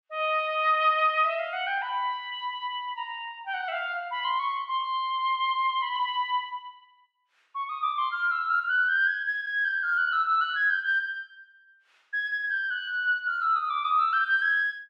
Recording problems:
none

